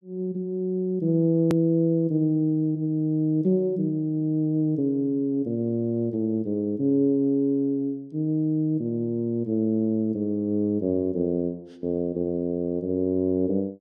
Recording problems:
click at an edit; at 1.5 s

